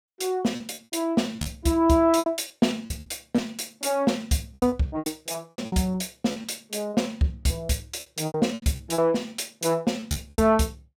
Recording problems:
lost packets; 14% of the sound replaced, filled with repeated pitch periods

